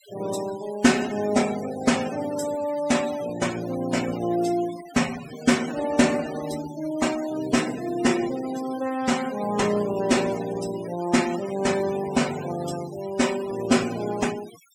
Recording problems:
noise reduction artefacts; signal-to-artefact ratio 14 dB

